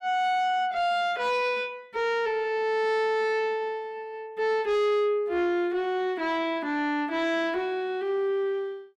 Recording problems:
distortion; soft clipping, signal-to-distortion ratio 11 dB

